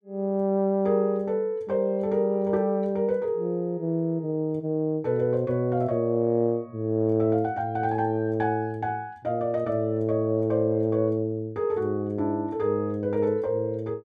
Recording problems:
none

